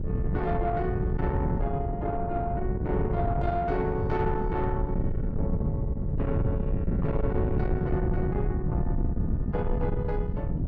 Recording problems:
distorted audio; soft clipping, signal-to-distortion ratio 13 dB
wind on the microphone; below 180 Hz, SNR -1 dB

